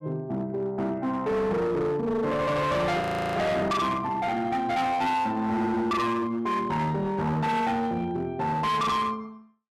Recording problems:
distorted audio; hard clipping, signal-to-distortion ratio 8 dB
audio freezing; at 3 s

